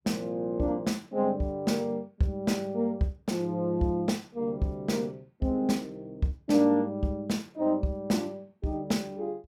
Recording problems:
none

